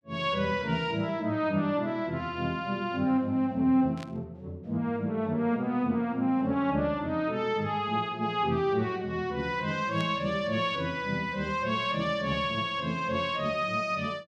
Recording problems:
static burst; at 4 s and at 10 s; peak -11 dB vs average level

